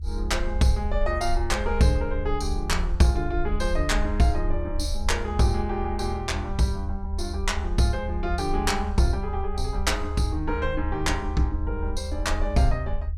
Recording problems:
rumble; below 72 Hz, SNR 5 dB

